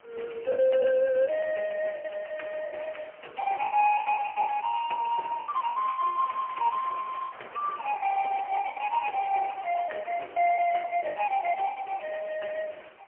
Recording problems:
telephone audio; 370 Hz to 3.1 kHz, AMR-NB, then MP3
wind on the microphone; below 2 kHz, SNR 22 dB
lost packets; 14% of the sound replaced, filled with the last packet

